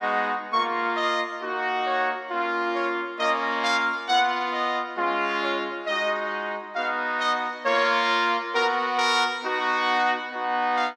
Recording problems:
none

